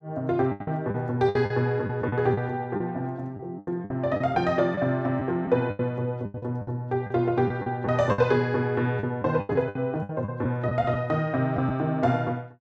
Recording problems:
lost packets; 11% of the sound replaced, filled with the last packet

